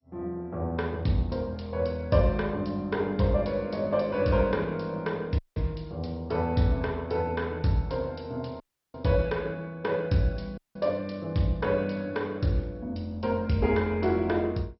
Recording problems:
lossy codec; MP2, log-spectral distance 3 dB, nothing above 5.5 kHz
dropout; at 5.5 s, at 8.5 s and at 11 s

